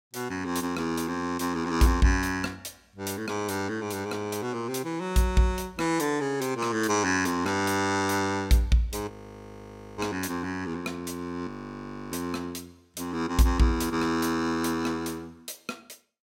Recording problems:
audio freezing; at 9 s for 1 s and at 11 s for 0.5 s

